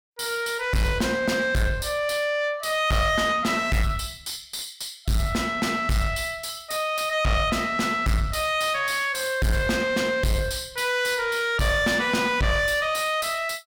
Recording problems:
distortion; soft clipping, signal-to-distortion ratio 6 dB

